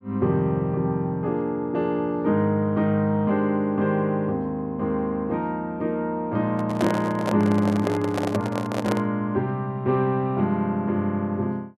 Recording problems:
microphone handling noise; from 6.5 to 9 s; peak +1 dB vs average level

